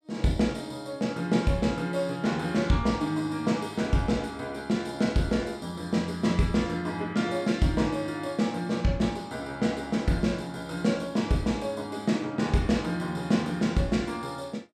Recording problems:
none

